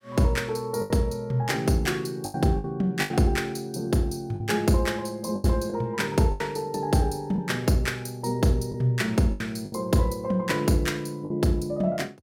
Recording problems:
packet loss; 6% of the sound replaced, filled with the last packet

